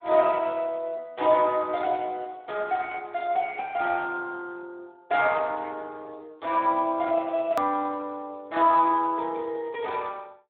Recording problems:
phone line; 280 Hz to 3.5 kHz, Speex
edit click; at 7.5 s

